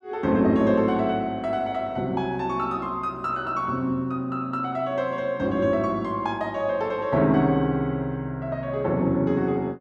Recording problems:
none

